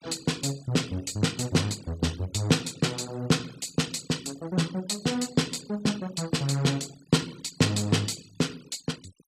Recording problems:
noise reduction artefacts; signal-to-artefact ratio 20 dB

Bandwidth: 15 kHz